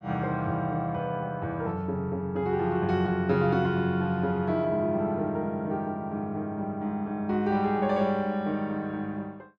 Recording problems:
none

